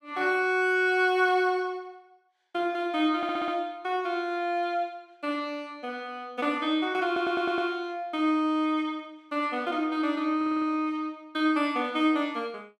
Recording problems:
audio stuttering; at 3 s, at 7 s and at 10 s

